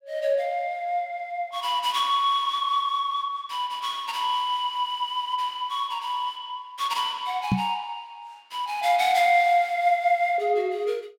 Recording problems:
microphone thump; at 7.5 s; peak +5 dB vs average level

